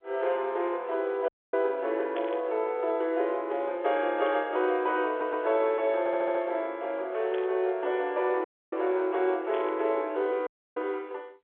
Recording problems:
phone line; 320 Hz to 3.5 kHz, G.711
dropout; at 1.5 s, at 8.5 s and at 10 s
static burst; 4 times, first at 2 s; peak -9 dB vs average level
stutter; at 5 s and at 6 s

